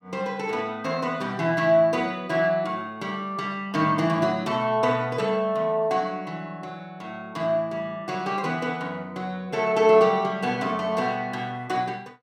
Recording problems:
none

